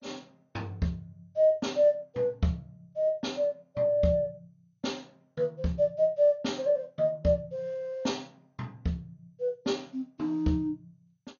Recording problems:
lossy compression; MP2, log-spectral distance 2 dB, nothing above 6.7 kHz

